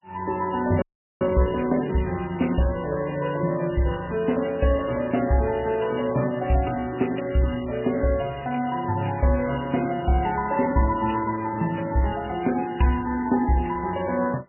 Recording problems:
codec artefacts; MP3, log-spectral distance 7 dB, nothing above 2.9 kHz
frozen audio; at 1 s

